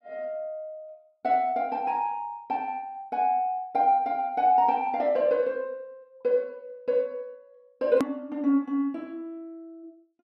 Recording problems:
hard cut with a click; at 8 s

